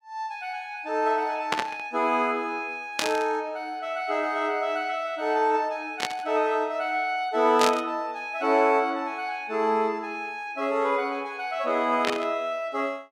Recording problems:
static burst; 5 times, first at 1.5 s; peak +5 dB vs average level

